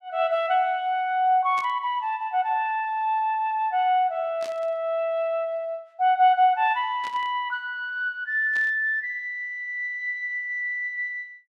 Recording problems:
static burst; 4 times, first at 1.5 s; peak -12 dB vs average level

